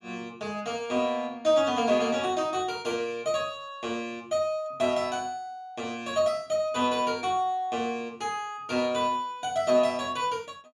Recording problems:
none

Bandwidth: 13 kHz